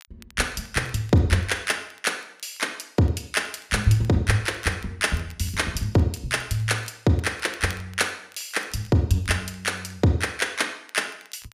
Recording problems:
crackle; vinyl, SNR 27 dB

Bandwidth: 15 kHz